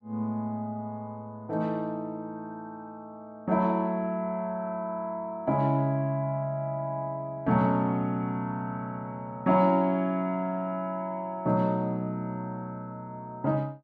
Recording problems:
none

